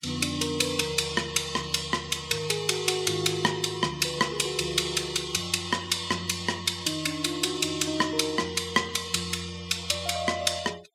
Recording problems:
noise reduction artefacts; signal-to-artefact ratio 21 dB

